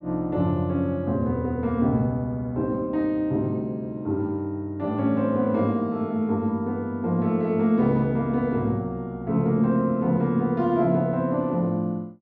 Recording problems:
none

